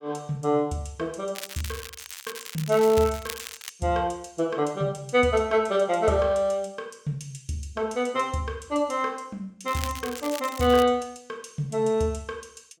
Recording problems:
crackling; from 1.5 to 3.5 s and from 9.5 to 11 s; loose cable, SNR 12 dB

